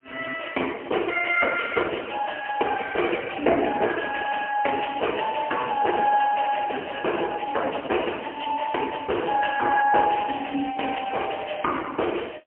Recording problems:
telephone audio; 260 Hz to 3 kHz, AMR-NB, then MP3

